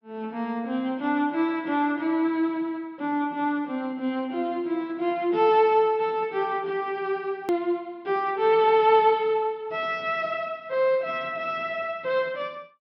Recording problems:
treble cut off; nothing above 5.5 kHz
hard cut with a click; at 7.5 s

